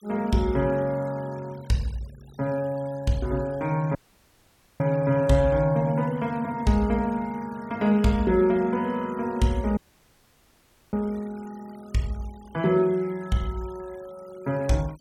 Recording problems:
denoising artefacts; signal-to-artefact ratio 25 dB
audio cutting out; at 4 s for 1 s and at 10 s for 1 s

